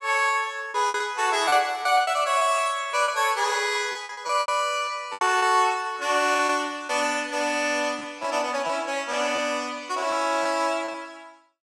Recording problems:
packet loss; 9% of the sound replaced, filled with repeated pitch periods

